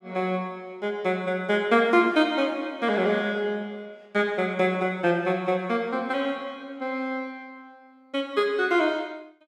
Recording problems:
none

